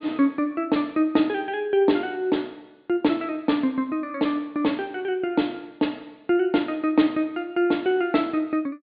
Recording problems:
treble cut off; nothing above 4.6 kHz

